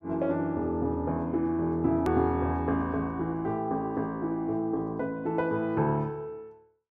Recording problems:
click at an edit; at 2 s

